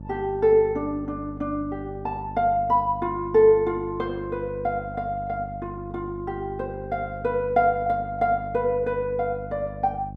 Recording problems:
electrical hum; 50 Hz, harmonics up to 600 Hz, SNR 14 dB

